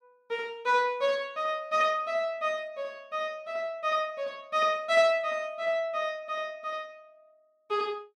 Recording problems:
none

